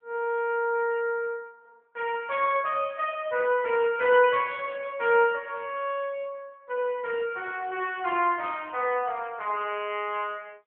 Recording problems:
telephone audio; 280 Hz to 3.4 kHz, AMR-NB

